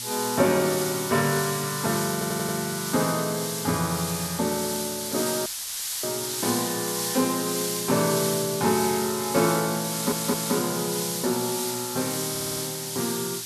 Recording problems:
electrical hum; 60 Hz, harmonics up to 840 Hz, SNR 21 dB
background hiss; SNR 2 dB
stutter; at 2 s, at 10 s and at 12 s
audio cutting out; at 5.5 s for 0.5 s

